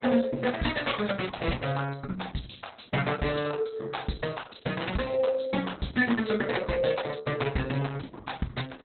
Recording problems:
lossy compression; Opus, log-spectral distance 7 dB, nothing above 4.1 kHz

